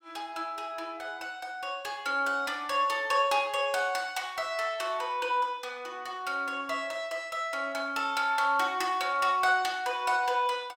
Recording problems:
none

